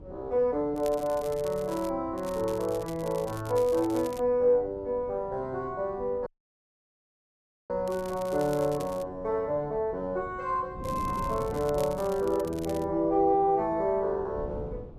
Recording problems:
wind noise; below 300 Hz, SNR 17 dB
crackle; 4 times, first at 1 s; loose cable, SNR 19 dB
audio cutting out; at 6.5 s for 1.5 s

